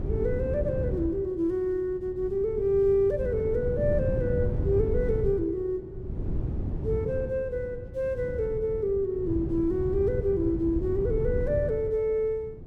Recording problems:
wind on the microphone; below 160 Hz, SNR 5 dB

